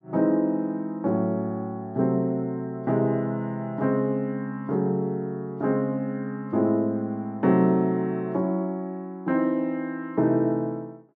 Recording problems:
none

